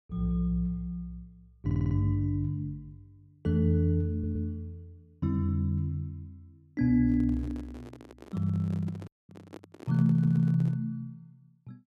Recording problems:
stutter; at 1.5 s, at 4 s and at 10 s
handling noise; from 7 to 11 s; peak -12 dB vs average level
dropout; at 9 s

